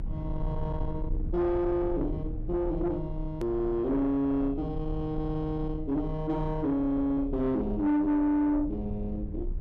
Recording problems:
distorted audio; soft clipping, signal-to-distortion ratio 11 dB
rumble; below 84 Hz, strongest tone 32 Hz, SNR 9 dB
hard cut with a click; at 3.5 s

